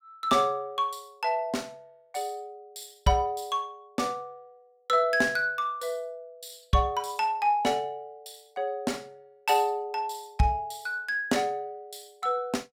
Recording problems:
none

